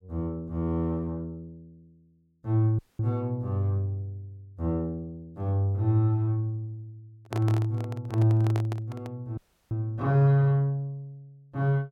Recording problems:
dropout; at 3 s and at 9.5 s
handling noise; from 7 to 9 s; peak -4 dB vs average level

